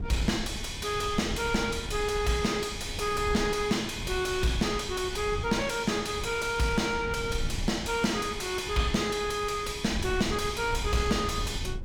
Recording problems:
distortion; soft clipping, signal-to-distortion ratio 8 dB
wind on the microphone; below 120 Hz, SNR 9 dB

